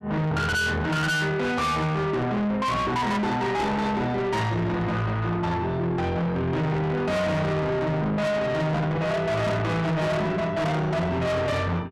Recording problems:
distorted audio; soft clipping, signal-to-distortion ratio 7 dB

